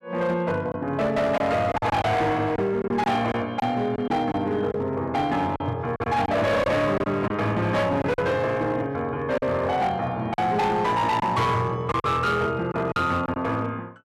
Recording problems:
distortion; hard clipping, signal-to-distortion ratio 10 dB
lost packets; 6% of the sound replaced, filled with silence

